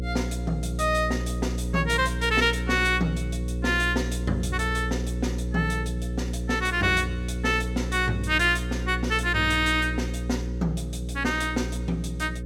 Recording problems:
hum; 60 Hz, harmonics up to 540 Hz, SNR 5 dB

